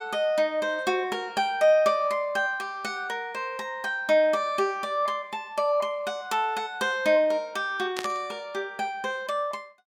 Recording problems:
static burst; at 8 s; peak -2 dB vs average level

